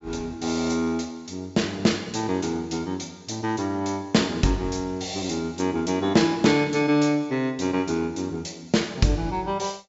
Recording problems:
treble cut off; nothing above 8 kHz

